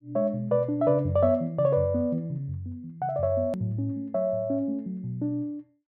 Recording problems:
hard cut with a click; at 3.5 s

